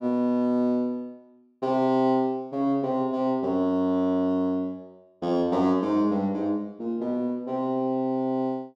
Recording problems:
none

